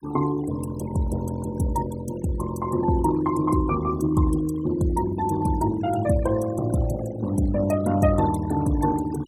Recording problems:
noise reduction artefacts; signal-to-artefact ratio 16 dB

